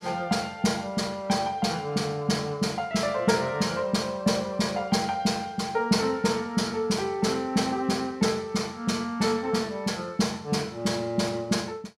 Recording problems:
none

